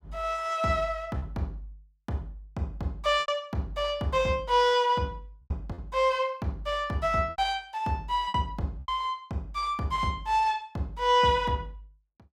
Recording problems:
packet loss; 4% of the sound replaced, filled with repeated pitch periods

